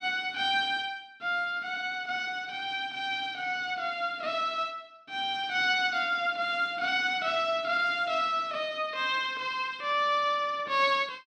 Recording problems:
none

